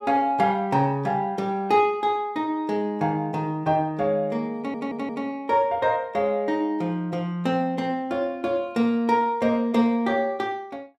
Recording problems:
audio stuttering; at 4.5 s

